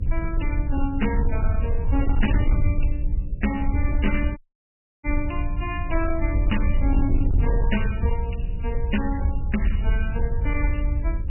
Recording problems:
lossy codec; MP3, log-spectral distance 3 dB, nothing above 2.8 kHz
distortion; hard clipping, signal-to-distortion ratio 11 dB
hum; 60 Hz, harmonics up to 600 Hz, SNR 12 dB
low-frequency rumble; below 70 Hz, SNR -3 dB
audio cutting out; at 4.5 s for 0.5 s

